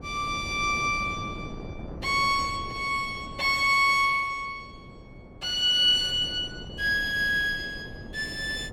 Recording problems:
wind noise; below 390 Hz, SNR 17 dB

